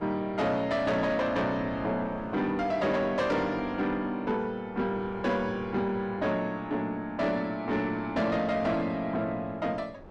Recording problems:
distortion; soft clipping, signal-to-distortion ratio 11 dB
wind on the microphone; below 640 Hz, SNR 19 dB

